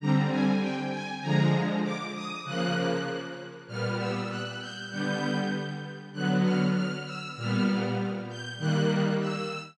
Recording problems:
none

